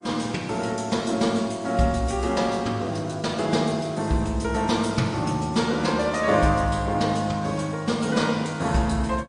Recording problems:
lossy compression; MP3, log-spectral distance 3 dB, nothing above 9.5 kHz

